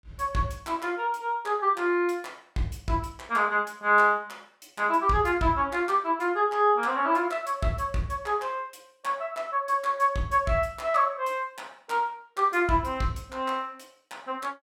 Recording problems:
none

